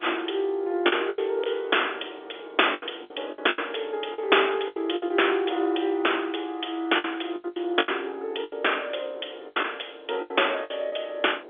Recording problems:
phone line; 300 Hz to 3.5 kHz, G.711
wind on the microphone; below 600 Hz, SNR 21 dB
packet loss; 11% of the sound replaced, filled with the last packet

